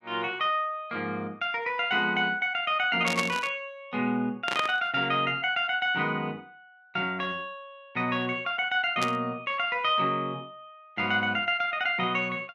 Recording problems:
static burst; at 3 s, at 4.5 s and at 9 s; peak +1 dB vs average level

